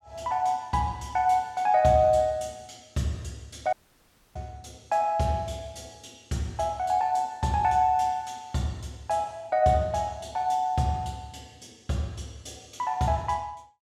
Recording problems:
dropout; at 3.5 s for 0.5 s

